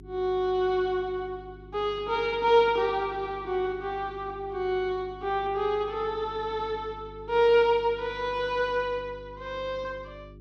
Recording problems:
hum; 50 Hz, harmonics up to 400 Hz, SNR 20 dB

